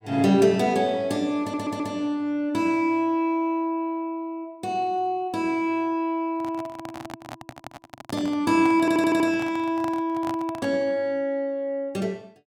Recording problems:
audio stuttering; at 1.5 s and at 9 s
microphone handling noise; from 6.5 to 11 s; peak -6 dB vs average level

